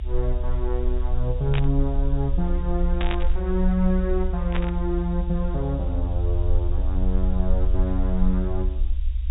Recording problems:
treble cut off; nothing above 4 kHz
hiss; SNR 27 dB
low-frequency rumble; below 64 Hz, SNR -1 dB
burst of static; at 1.5 s, at 3 s and at 4.5 s; peak +1 dB vs average level

